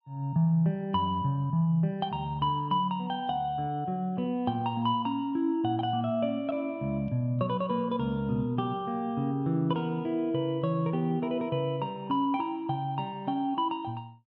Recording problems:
none

